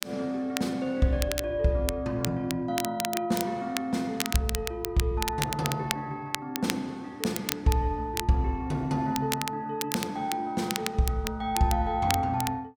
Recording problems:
crackling; vinyl, SNR 6 dB

